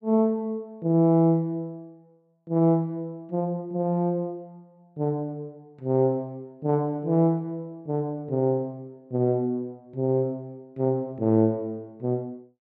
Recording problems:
none

